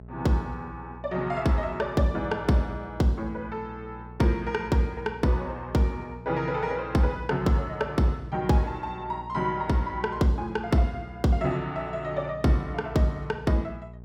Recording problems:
hum; 60 Hz, harmonics up to 660 Hz, SNR 16 dB

